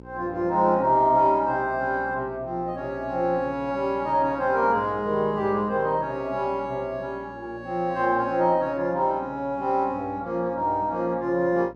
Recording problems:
hum; 60 Hz, harmonics up to 1 kHz, SNR 21 dB

